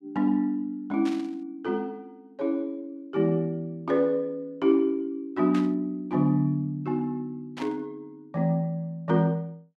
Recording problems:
burst of static; at 1 s, at 5.5 s and at 7.5 s; peak -8 dB vs average level

